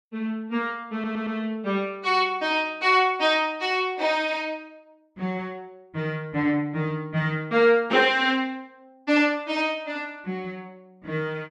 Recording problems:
audio stuttering; at 1 s

